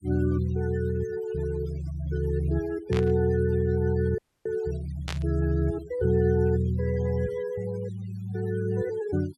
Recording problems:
denoising artefacts; signal-to-artefact ratio 21 dB
burst of static; at 3 s and at 5 s; peak -3 dB vs average level
frozen audio; at 4 s

